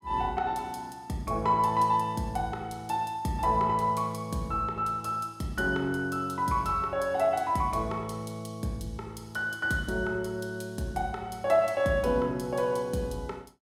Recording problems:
none

